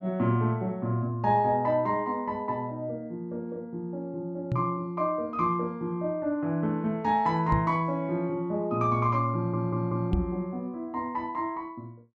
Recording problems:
microphone thump; at 4.5 s, at 7.5 s and at 10 s; peak +4 dB vs average level
audio stuttering; at 9.5 s

